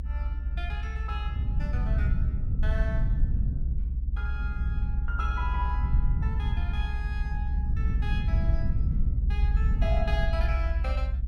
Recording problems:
low-frequency rumble; below 70 Hz, SNR -10 dB

